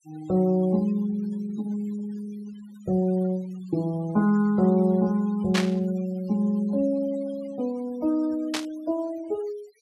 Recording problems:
denoising artefacts; signal-to-artefact ratio 24 dB
burst of static; at 5.5 s and at 8.5 s; peak +3 dB vs average level

